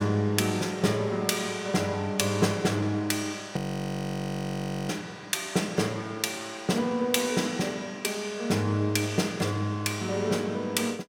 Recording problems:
frozen audio; at 3.5 s for 1.5 s

